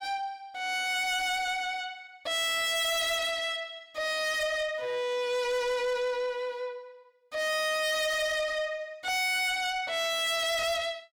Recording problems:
distorted audio; soft clipping, signal-to-distortion ratio 6 dB

